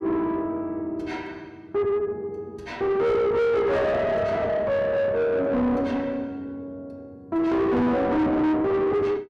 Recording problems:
distorted audio; soft clipping, signal-to-distortion ratio 6 dB

